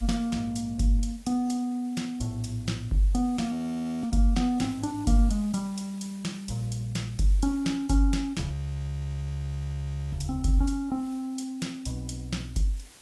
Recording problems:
codec artefacts; AAC, log-spectral distance 3 dB
hiss; SNR 25 dB
audio freezing; at 3.5 s for 0.5 s and at 8.5 s for 1.5 s

